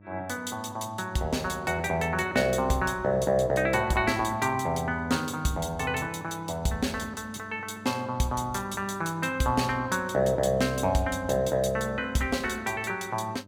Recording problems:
hum; 50 Hz, harmonics up to 1.2 kHz, SNR 21 dB

